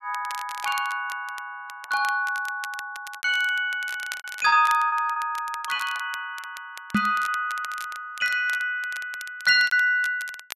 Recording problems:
crackling; vinyl, SNR 17 dB
lost packets; 7% of the sound replaced, filled with repeated pitch periods
knock on the microphone; at 7 s; peak +5 dB vs average level

